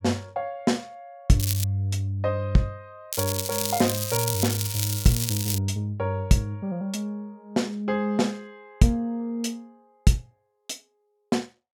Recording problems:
crackle; at 1.5 s and from 3 to 5.5 s; loose cable, SNR 2 dB

